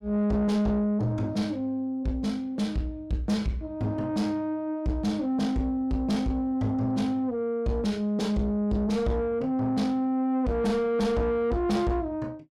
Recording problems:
distorted audio; soft clipping, signal-to-distortion ratio 10 dB

